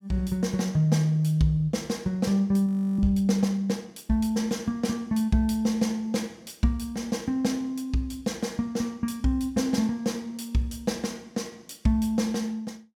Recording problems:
audio freezing; at 2.5 s

